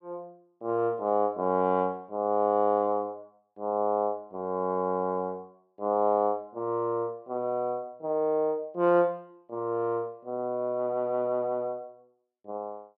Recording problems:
none

